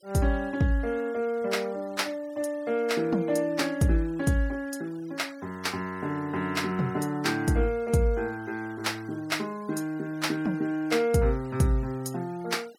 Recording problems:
denoising artefacts; signal-to-artefact ratio 24 dB

